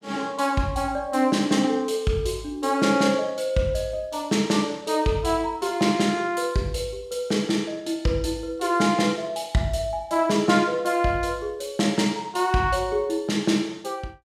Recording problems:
none

